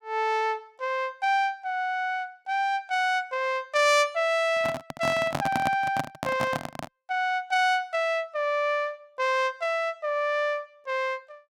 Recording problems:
handling noise; from 4.5 to 7 s; peak +2 dB vs average level

